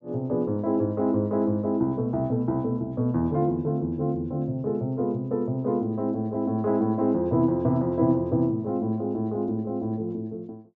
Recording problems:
low-pass filter; nothing above 8 kHz

